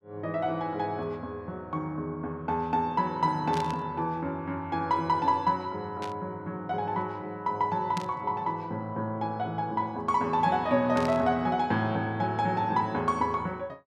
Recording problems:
burst of static; 4 times, first at 3.5 s; peak -6 dB vs average level

